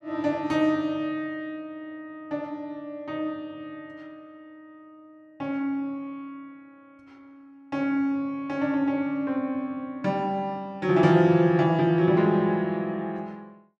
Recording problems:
none

